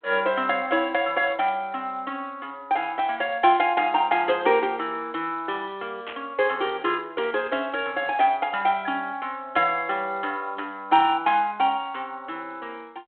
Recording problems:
telephone audio; 240 Hz to 3.5 kHz, G.726
static burst; at 6 s; peak -8 dB vs average level

